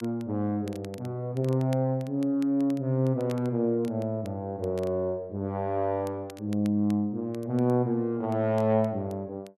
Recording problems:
crackling; vinyl, SNR 26 dB

